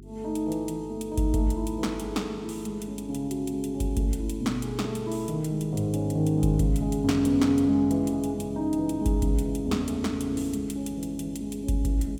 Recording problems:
electrical hum; 50 Hz, harmonics up to 400 Hz, SNR 19 dB

